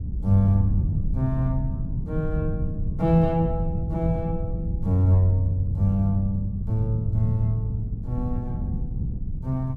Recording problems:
wind noise; below 140 Hz, SNR 5 dB

